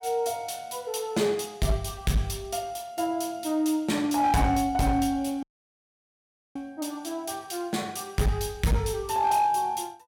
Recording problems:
distortion; hard clipping, signal-to-distortion ratio 11 dB
audio cutting out; at 5.5 s for 1 s

